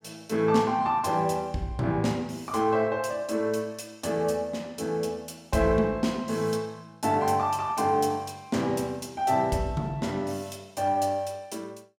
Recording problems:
none

